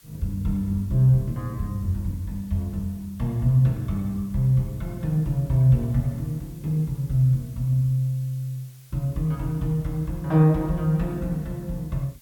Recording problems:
background hiss; slope +2 dB per octave, SNR 28 dB

